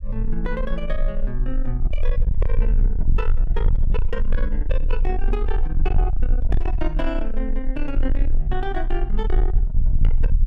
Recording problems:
distortion; soft clipping, signal-to-distortion ratio 6 dB
low-frequency rumble; below 40 Hz, strongest tone 18 Hz, SNR -5 dB

